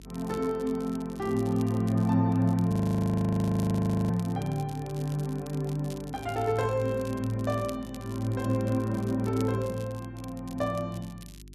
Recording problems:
hum; 50 Hz, harmonics up to 400 Hz, SNR 21 dB
crackle; vinyl, SNR 22 dB
frozen audio; at 2.5 s for 1.5 s

